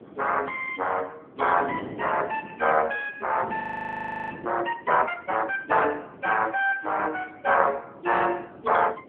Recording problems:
telephone audio; 280 Hz to 3.3 kHz, AMR-NB
wind noise; below 500 Hz, SNR 17 dB
frozen audio; at 3.5 s for 0.5 s

